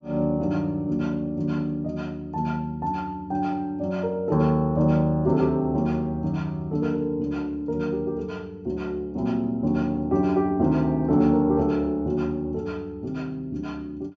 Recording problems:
treble missing; nothing above 8 kHz

